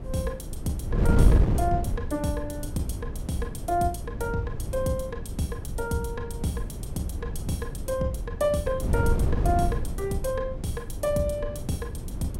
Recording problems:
wind on the microphone; below 140 Hz, SNR 0 dB

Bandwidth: 16 kHz